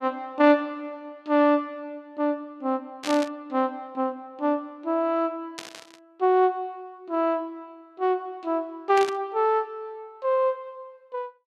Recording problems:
static burst; at 3 s, at 5.5 s and at 9 s; peak -3 dB vs average level

